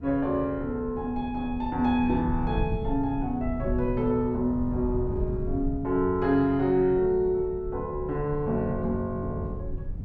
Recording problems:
wind on the microphone; below 120 Hz, SNR 9 dB

